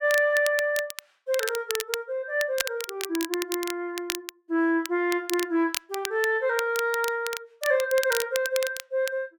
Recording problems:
crackling; vinyl, SNR 8 dB

